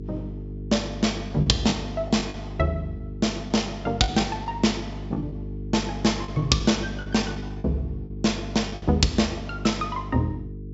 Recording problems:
treble missing; nothing above 8 kHz
electrical hum; 50 Hz, harmonics up to 450 Hz, SNR 10 dB
lost packets; 7% of the sound replaced, filled with the last packet

